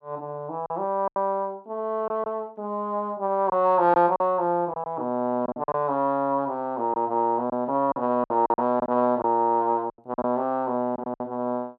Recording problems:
packet loss; 8% of the sound replaced, filled with silence

